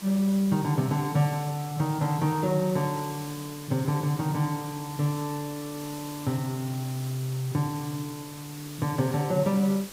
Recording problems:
hiss; slope -1 dB per octave, SNR 14 dB

